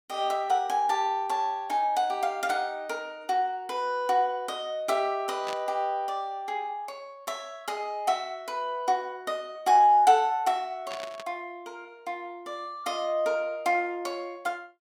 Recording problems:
burst of static; at 5.5 s and at 11 s; peak -6 dB vs average level

